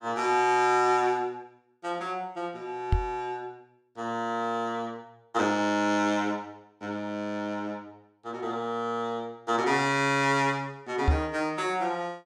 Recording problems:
microphone bump; at 3 s and at 11 s; peak +8 dB vs average level

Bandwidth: 16 kHz